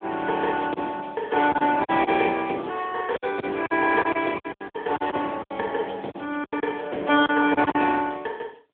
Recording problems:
phone line; 240 Hz to 3.5 kHz, AMR-NB
lost packets; 10% of the sound replaced, filled with silence

